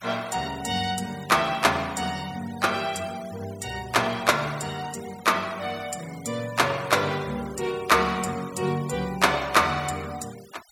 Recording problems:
noise reduction artefacts; signal-to-artefact ratio 19 dB

